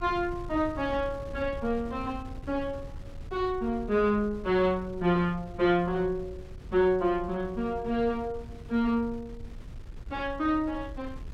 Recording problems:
wind on the microphone; below 110 Hz, SNR 15 dB

